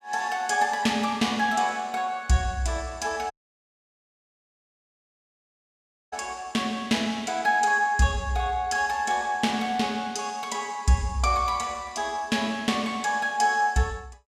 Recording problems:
audio cutting out; at 3.5 s for 3 s

